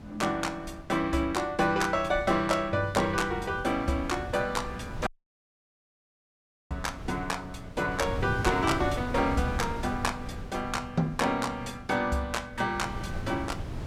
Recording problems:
wind on the microphone; below 260 Hz, SNR 10 dB
dropout; at 5 s for 1.5 s

